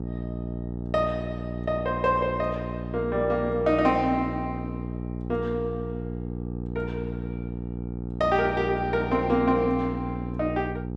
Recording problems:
electrical hum; 60 Hz, harmonics up to 840 Hz, SNR 6 dB

